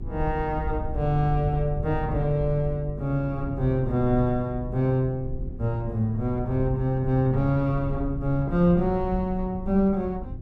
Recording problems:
electrical hum; 50 Hz, harmonics up to 400 Hz, SNR 15 dB
rumble; below 92 Hz, SNR 10 dB

